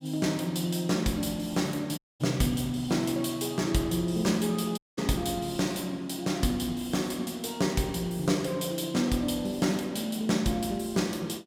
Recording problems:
dropout; at 2 s and at 5 s

